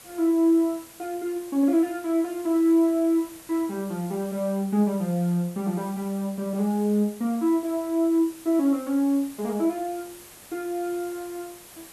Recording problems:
hiss; slope -2 dB per octave, SNR 20 dB

